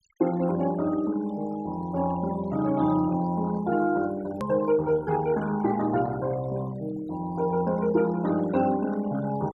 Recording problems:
denoising artefacts; signal-to-artefact ratio 17 dB
edit click; at 4.5 s

